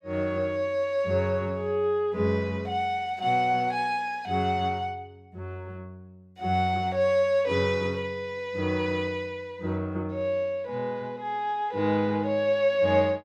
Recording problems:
none

